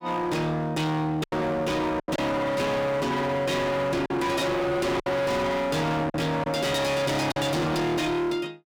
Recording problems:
distortion; hard clipping, signal-to-distortion ratio 6 dB
lost packets; 4% of the sound replaced, filled with silence

